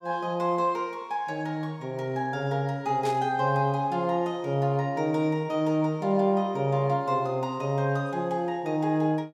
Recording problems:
static burst; at 3 s; peak -9 dB vs average level

